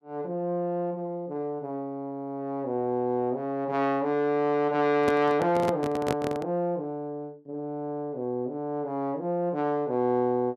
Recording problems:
microphone handling noise; from 5 to 6.5 s; peak +3 dB vs average level

